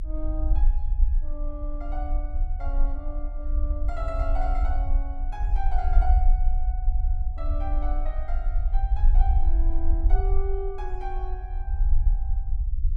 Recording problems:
rumble; below 50 Hz, SNR -10 dB

